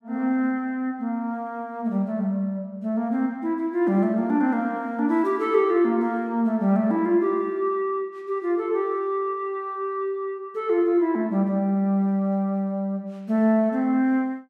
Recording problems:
none

